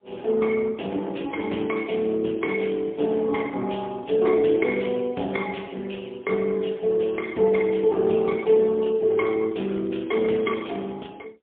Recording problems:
telephone audio; 220 Hz to 3.4 kHz, AMR-NB, then MP3

